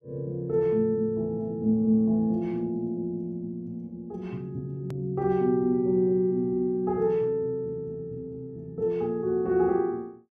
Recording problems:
click at an edit; at 5 s

